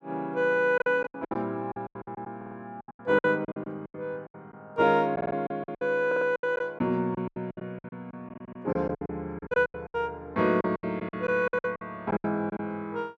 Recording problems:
lost packets; 18% of the sound replaced, filled with silence
stutter; 4 times, first at 2.5 s

